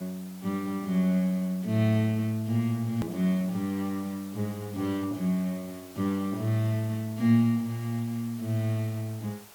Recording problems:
hiss; SNR 20 dB
edit click; at 3 s

